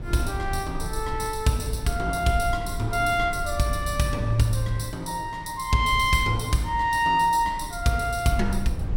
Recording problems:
rumble; below 84 Hz, SNR 11 dB

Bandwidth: 16.5 kHz